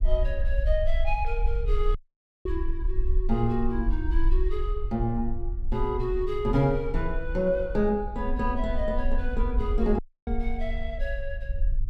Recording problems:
low-frequency rumble; below 46 Hz, strongest tone 22 Hz, SNR 2 dB
audio cutting out; at 2 s for 0.5 s and at 10 s

